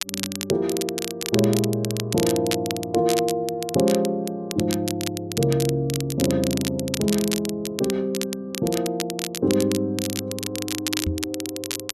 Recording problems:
crackle; vinyl, SNR 6 dB
knock on the microphone; at 11 s; peak +2 dB vs average level

